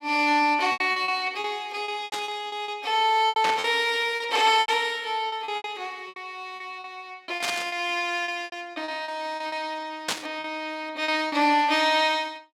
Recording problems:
lost packets; 12% of the sound replaced, filled with repeated pitch periods
static burst; 4 times, first at 2 s; peak +2 dB vs average level

